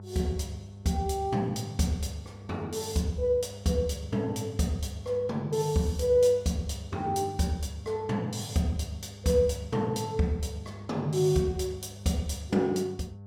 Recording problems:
electrical hum; 50 Hz, harmonics up to 700 Hz, SNR 16 dB

